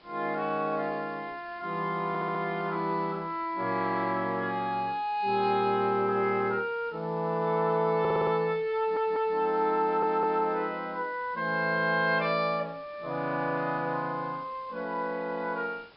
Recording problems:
low-pass filter; nothing above 5.3 kHz
background hiss; SNR 27 dB
audio stuttering; 4 times, first at 2 s

